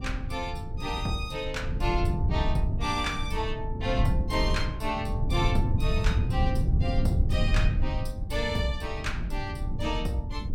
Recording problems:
low-frequency rumble; below 110 Hz, SNR -2 dB

